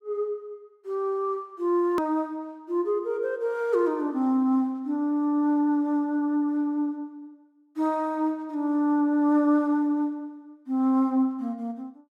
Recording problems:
edit click; at 2 s

